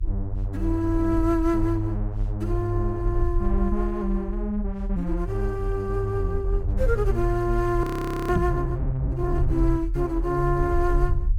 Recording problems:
rumble; below 56 Hz, strongest tone 38 Hz, SNR 4 dB
audio freezing; at 8 s
microphone bump; at 8.5 s; peak +5 dB vs average level

